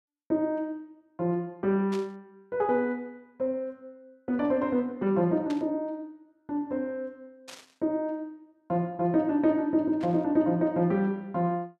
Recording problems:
static burst; 4 times, first at 2 s; peak -10 dB vs average level

